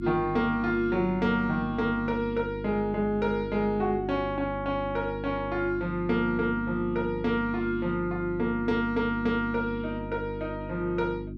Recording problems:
hum; 50 Hz, harmonics up to 350 Hz, SNR 9 dB

